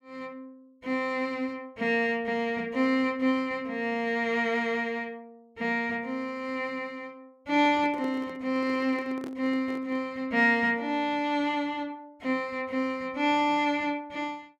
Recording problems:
handling noise; from 7.5 to 10 s; peak -8 dB vs average level

